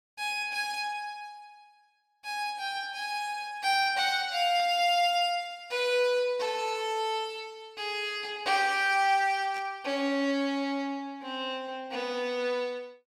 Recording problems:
static burst; at 4.5 s and at 9.5 s; peak -14 dB vs average level

